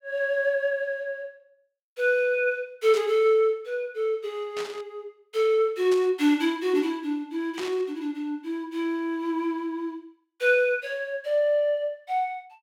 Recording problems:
burst of static; 4 times, first at 3 s; peak -7 dB vs average level

